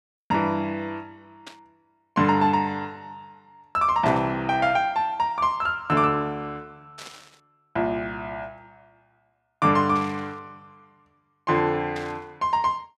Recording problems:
static burst; 5 times, first at 1.5 s; peak -11 dB vs average level

